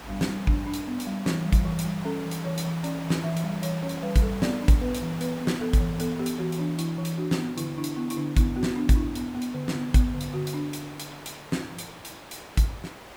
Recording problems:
background hiss; SNR 14 dB

